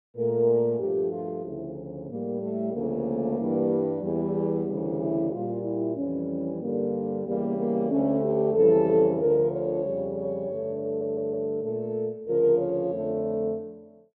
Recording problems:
stutter; at 11 s

